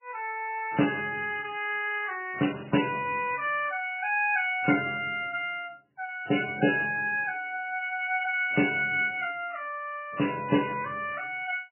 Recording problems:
lossy compression; MP3, log-spectral distance 4 dB, nothing above 2.5 kHz

